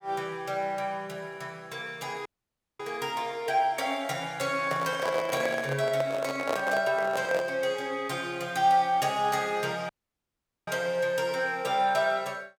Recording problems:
audio cutting out; at 2.5 s for 0.5 s and at 10 s for 1 s
handling noise; from 4.5 to 7.5 s; peak +2 dB vs average level

